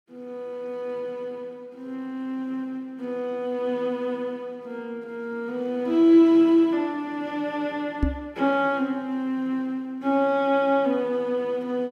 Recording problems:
microphone bump; at 8 s; peak +5 dB vs average level

